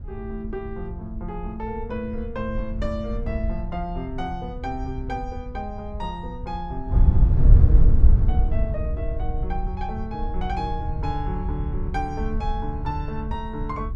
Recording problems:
wind noise; below 72 Hz, SNR -7 dB

